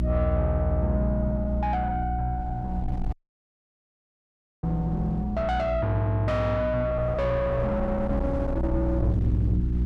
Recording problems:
distorted audio; soft clipping, signal-to-distortion ratio 7 dB
electrical hum; 60 Hz, harmonics up to 360 Hz, SNR 4 dB
wind on the microphone; below 280 Hz, SNR 8 dB
dropout; at 3 s for 1.5 s

